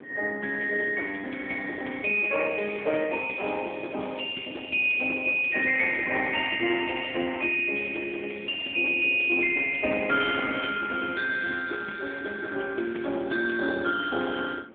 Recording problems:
telephone audio; 220 Hz to 3.5 kHz, AMR-NB
wind on the microphone; below 510 Hz, SNR 22 dB

